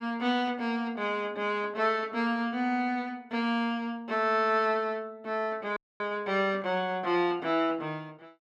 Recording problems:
dropout; at 6 s

